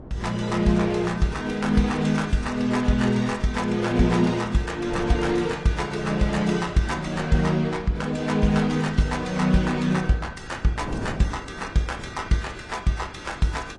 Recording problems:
lossy codec; AAC, log-spectral distance 3 dB, nothing above 10.4 kHz
wind on the microphone; below 360 Hz, SNR 17 dB

